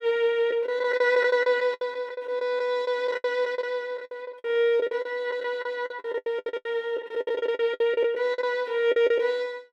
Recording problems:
packet loss; 17% of the sound replaced, filled with the last packet

